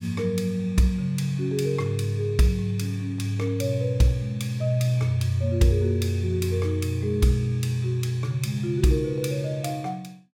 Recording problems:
none

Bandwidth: 17 kHz